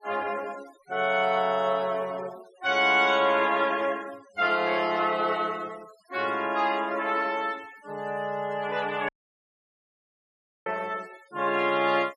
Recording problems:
denoising artefacts; signal-to-artefact ratio 25 dB
dropout; at 9 s for 1.5 s

